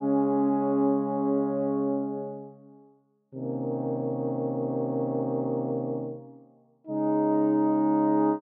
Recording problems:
none

